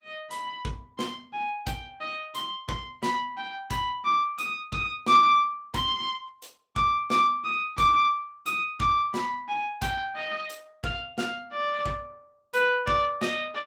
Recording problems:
lossy compression; Opus, log-spectral distance 3 dB

